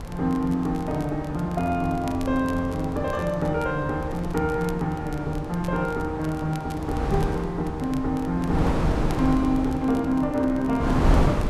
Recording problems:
wind on the microphone; below 400 Hz, SNR 5 dB
crackling; vinyl, SNR 23 dB

